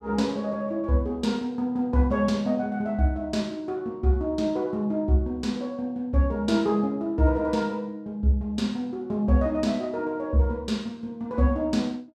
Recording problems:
none

